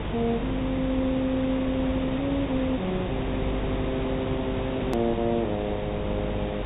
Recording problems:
treble missing; nothing above 4 kHz
electrical hum; 50 Hz, harmonics up to 450 Hz, SNR 7 dB
background hiss; SNR 5 dB
click at an edit; at 5 s

